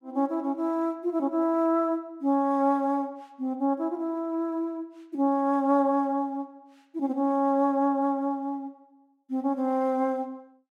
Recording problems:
none

